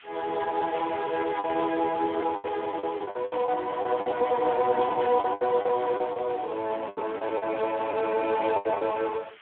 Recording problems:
phone line; 280 Hz to 2.8 kHz, Speex
hiss; SNR 22 dB
packet loss; 11% of the sound replaced, filled with the last packet

